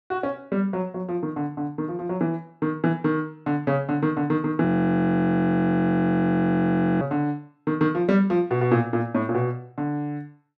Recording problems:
frozen audio; at 4.5 s for 2.5 s

